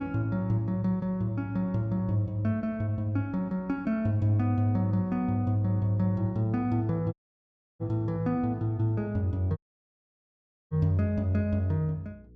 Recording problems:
electrical hum; 60 Hz, harmonics up to 480 Hz, SNR 26 dB
dropout; at 7 s for 0.5 s and at 9.5 s for 1 s

